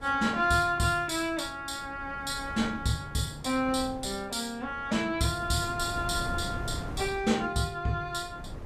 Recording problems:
wind noise; below 310 Hz, SNR 13 dB

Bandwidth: 14.5 kHz